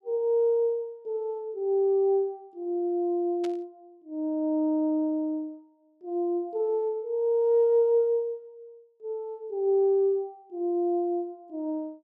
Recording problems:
burst of static; at 3.5 s; peak -12 dB vs average level

